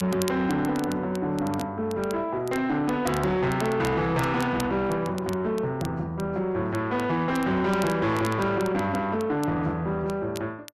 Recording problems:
distorted audio; soft clipping, signal-to-distortion ratio 10 dB
crackling; vinyl, SNR 18 dB

